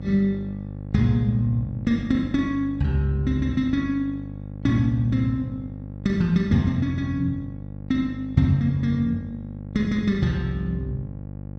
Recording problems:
hum; 50 Hz, harmonics up to 800 Hz, SNR 12 dB

